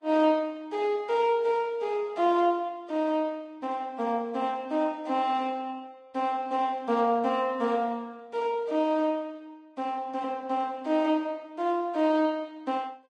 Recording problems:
lossy compression; Vorbis, log-spectral distance 2 dB, nothing above 10.1 kHz

